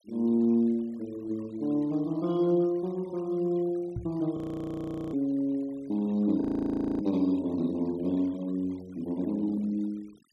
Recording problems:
noise reduction artefacts; signal-to-artefact ratio 26 dB
microphone bump; at 4 s; peak -2 dB vs average level
audio freezing; at 4.5 s for 1 s and at 6.5 s for 0.5 s

